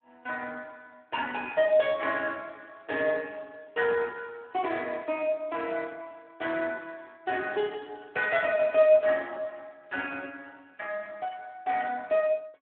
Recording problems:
phone line; 280 Hz to 3.5 kHz, Speex

